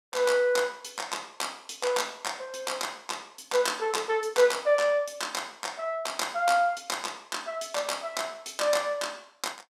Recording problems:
none

